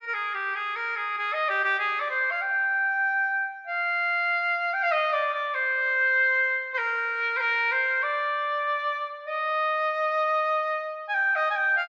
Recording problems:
none

